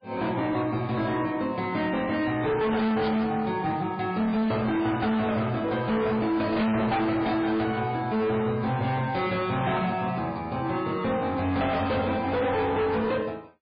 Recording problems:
lossy compression; MP3, log-spectral distance 3 dB, nothing above 4.6 kHz
distortion; hard clipping, signal-to-distortion ratio 6 dB
static burst; at 3 s and at 6.5 s; peak -9 dB vs average level

